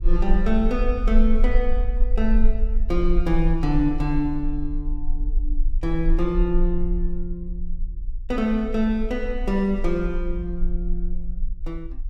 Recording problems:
rumble; below 38 Hz, strongest tone 22 Hz, SNR 2 dB

